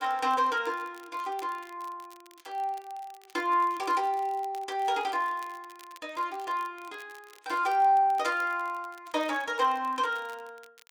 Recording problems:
crackle; vinyl, SNR 26 dB

